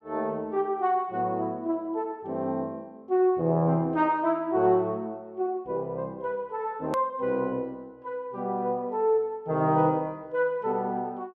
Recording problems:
edit click; at 7 s

